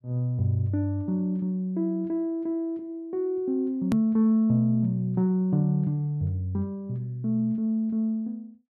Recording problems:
click at an edit; at 4 s

